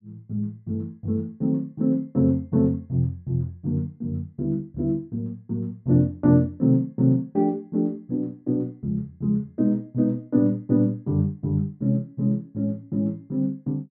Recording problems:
none

